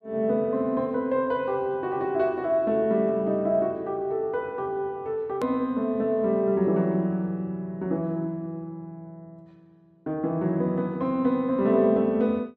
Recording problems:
edit click; at 5.5 s

